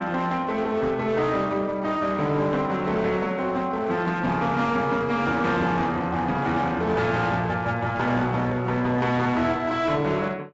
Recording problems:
lossy codec; AAC, log-spectral distance 2 dB, nothing above 7.6 kHz
distortion; hard clipping, uneven, signal-to-distortion ratio 10 dB

